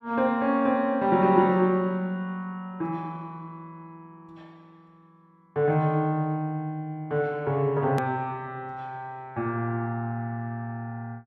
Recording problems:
click at an edit; at 8 s

